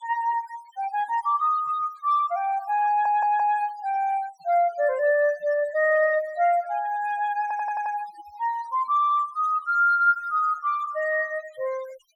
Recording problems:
denoising artefacts; signal-to-artefact ratio 22 dB
stutter; at 3 s and at 7.5 s

